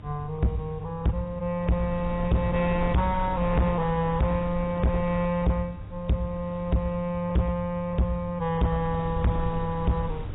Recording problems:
lossy compression; AAC, log-spectral distance 2 dB, nothing above 3.7 kHz
distorted audio; hard clipping, uneven, signal-to-distortion ratio 7 dB
hum; 50 Hz, harmonics up to 600 Hz, SNR 18 dB
wind on the microphone; below 120 Hz, SNR 11 dB

